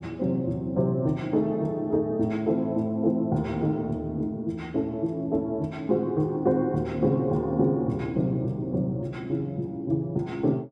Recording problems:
none

